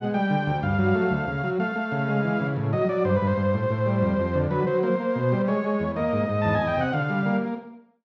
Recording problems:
none

